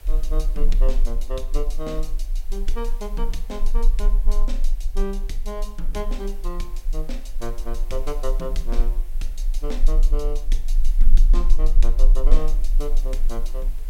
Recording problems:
hiss; SNR 18 dB
low-frequency rumble; below 32 Hz, strongest tone 18 Hz, SNR -8 dB

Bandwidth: 16 kHz